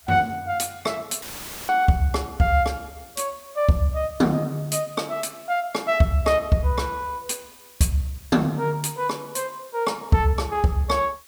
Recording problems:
background hiss; slope +1 dB per octave, SNR 23 dB
dropout; at 1 s; filled with static

